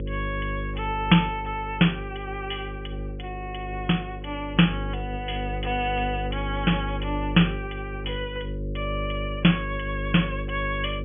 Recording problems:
low-pass filter; nothing above 3.4 kHz
hum; 50 Hz, harmonics up to 550 Hz, SNR 7 dB

